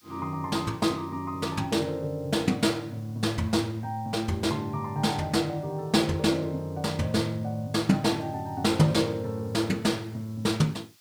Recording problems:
hiss; slope +3 dB per octave, SNR 29 dB

